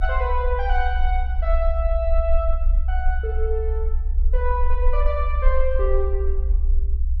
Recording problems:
low-frequency rumble; below 62 Hz, SNR -3 dB

